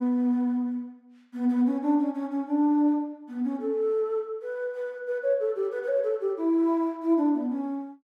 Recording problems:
none

